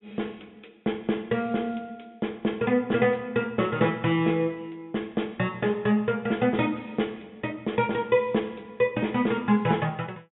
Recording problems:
treble cut off; nothing above 3.6 kHz

